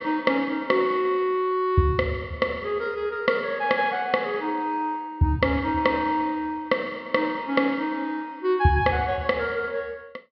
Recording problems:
treble cut off; nothing above 5.5 kHz

